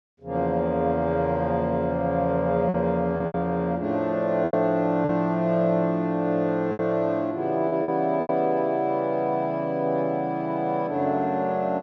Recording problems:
lost packets; 4% of the sound replaced, filled with repeated pitch periods

